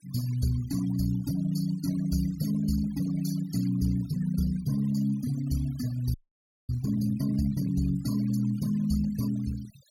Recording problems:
denoising artefacts; signal-to-artefact ratio 17 dB
audio freezing; at 6 s for 0.5 s

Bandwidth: 18 kHz